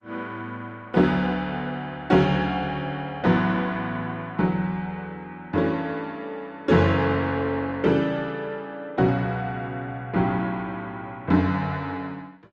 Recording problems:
lossy compression; Opus, log-spectral distance 2 dB

